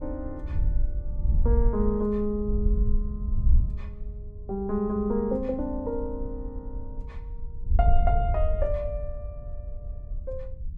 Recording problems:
wind noise; below 64 Hz, SNR 0 dB

